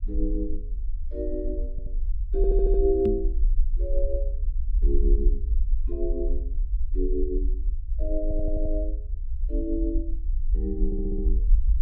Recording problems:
rumble; below 46 Hz, SNR -2 dB
stutter; 4 times, first at 1.5 s
knock on the microphone; at 3 s; peak +4 dB vs average level

